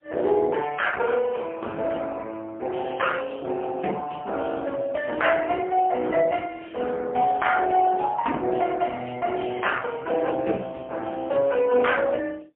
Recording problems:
phone line; 280 Hz to 3.1 kHz, AMR-NB, then MP3

